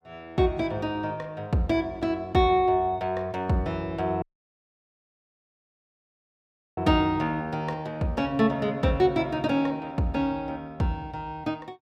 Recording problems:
dropout; at 4 s for 2.5 s

